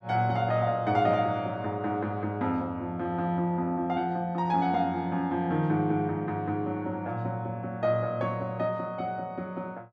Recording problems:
none

